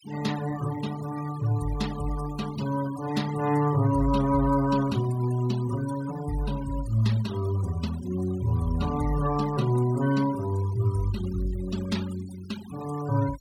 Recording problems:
denoising artefacts; signal-to-artefact ratio 17 dB

